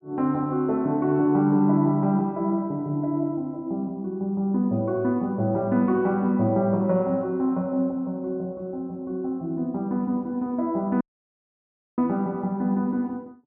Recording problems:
audio cutting out; at 11 s for 1 s

